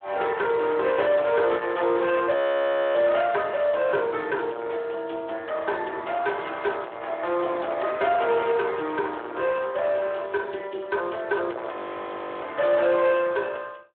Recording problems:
phone line; 300 Hz to 3.7 kHz, Speex
distortion; soft clipping, signal-to-distortion ratio 11 dB
frozen audio; at 2.5 s for 0.5 s and at 12 s for 0.5 s

